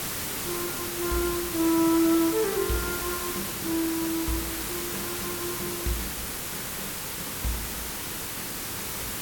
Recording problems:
hiss; SNR 1 dB

